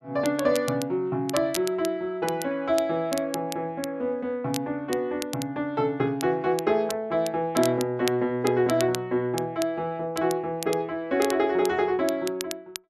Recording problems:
crackling; vinyl, SNR 13 dB

